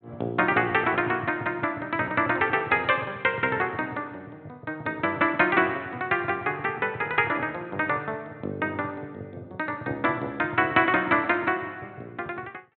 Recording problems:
treble cut off; nothing above 4 kHz

